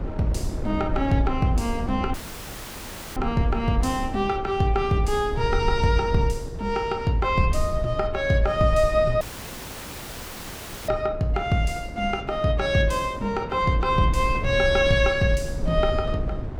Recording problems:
rumble; below 82 Hz, SNR 9 dB
wind noise; below 450 Hz, SNR 14 dB
audio cutting out; at 2 s for 1 s and at 9 s for 1.5 s

